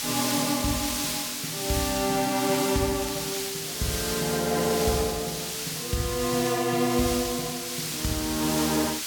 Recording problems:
background hiss; slope +3 dB per octave, SNR 2 dB
crackle; from 1 to 3.5 s; loose cable, SNR 17 dB

